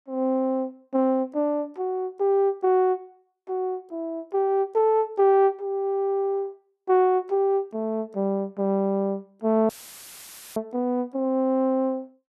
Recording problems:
audio cutting out; at 9.5 s for 1 s; filled with static

